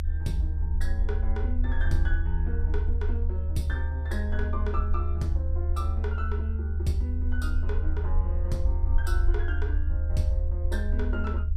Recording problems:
low-frequency rumble; below 76 Hz, SNR -7 dB

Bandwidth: 14.5 kHz